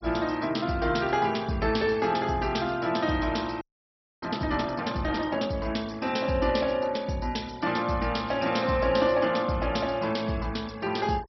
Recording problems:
low-pass filter; nothing above 5.7 kHz
denoising artefacts; signal-to-artefact ratio 22 dB
audio freezing; at 3.5 s for 0.5 s

